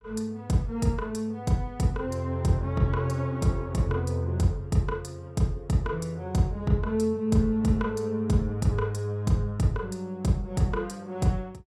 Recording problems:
none

